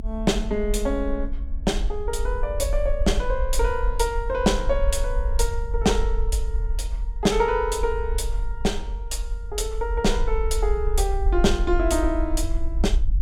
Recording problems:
low-frequency rumble; below 50 Hz, SNR 2 dB

